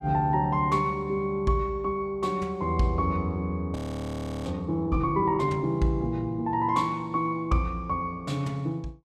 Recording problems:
audio freezing; at 4 s for 0.5 s

